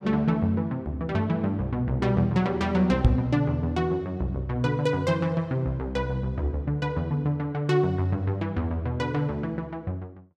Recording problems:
microphone thump; at 3 s; peak +9 dB vs average level

